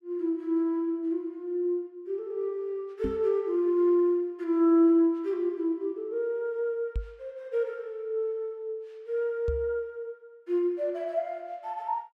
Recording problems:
microphone thump; at 3 s, at 7 s and at 9.5 s; peak 0 dB vs average level

